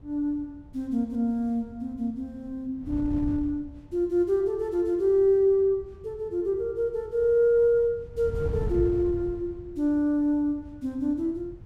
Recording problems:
wind on the microphone; below 130 Hz, SNR 14 dB

